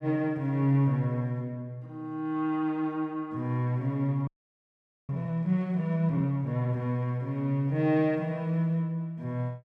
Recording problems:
audio freezing; at 4.5 s for 1 s

